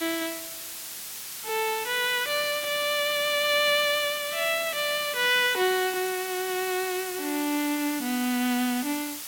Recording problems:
background hiss; slope +2 dB per octave, SNR 9 dB

